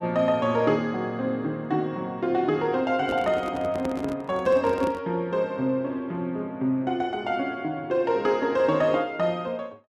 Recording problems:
microphone handling noise; from 3 to 5 s; peak -4 dB vs average level

